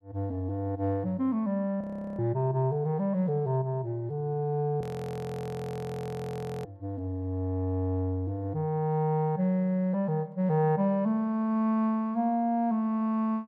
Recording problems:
frozen audio; at 2 s and at 5 s for 2 s

